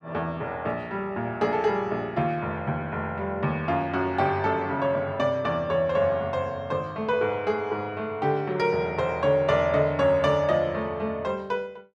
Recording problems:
none

